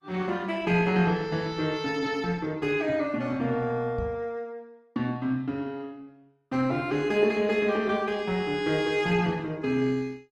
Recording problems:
lossy codec; Opus, log-spectral distance 2 dB, nothing above 16.1 kHz
knock on the microphone; at 4 s; peak -4 dB vs average level

